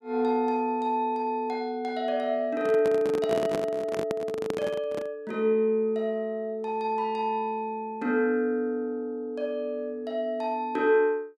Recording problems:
handling noise; from 2.5 to 5 s; peak 0 dB vs average level

